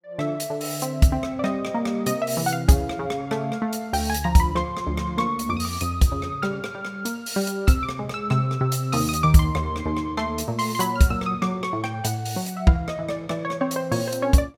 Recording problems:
none

